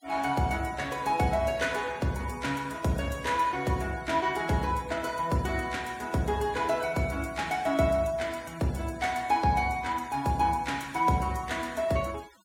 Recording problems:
noise reduction artefacts; signal-to-artefact ratio 21 dB

